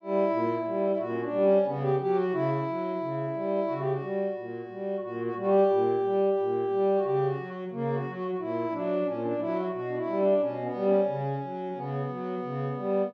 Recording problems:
none

